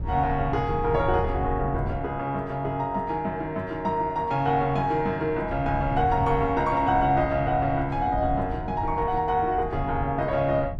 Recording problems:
wind on the microphone; below 120 Hz, SNR 10 dB

